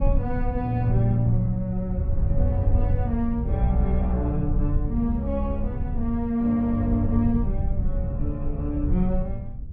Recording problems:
rumble; below 88 Hz, SNR 3 dB

